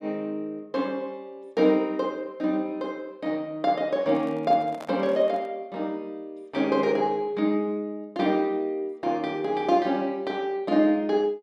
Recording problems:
handling noise; from 4 to 5.5 s; peak -8 dB vs average level

